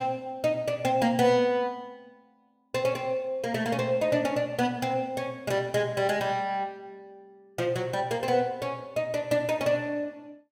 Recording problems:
none

